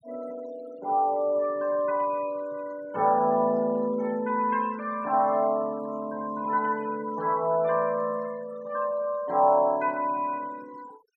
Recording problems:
denoising artefacts; signal-to-artefact ratio 23 dB

